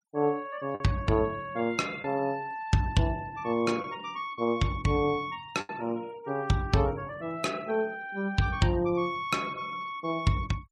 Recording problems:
denoising artefacts; signal-to-artefact ratio 24 dB
lost packets; 1.6% of the sound replaced, filled with the last packet

